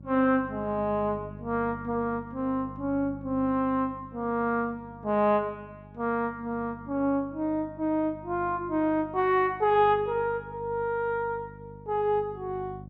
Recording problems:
electrical hum; 50 Hz, harmonics up to 600 Hz, SNR 17 dB

